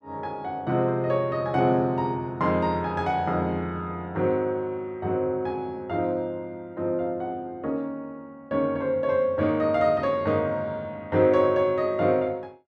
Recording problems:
none

